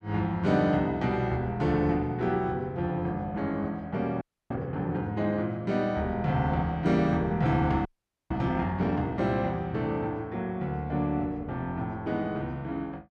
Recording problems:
frozen audio; at 4 s and at 8 s

